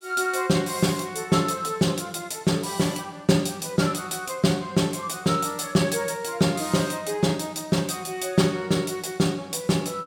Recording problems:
none

